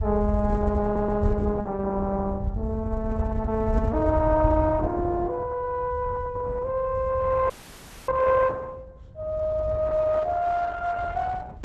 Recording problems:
lossy codec; Opus, log-spectral distance 3 dB
low-frequency rumble; below 90 Hz, SNR 7 dB
stutter; at 1 s
audio freezing; at 7.5 s for 0.5 s

